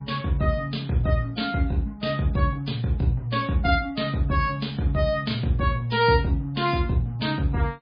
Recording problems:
codec artefacts; MP3, log-spectral distance 3 dB, nothing above 4.4 kHz

